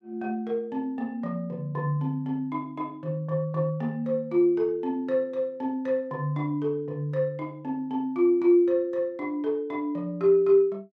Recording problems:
none

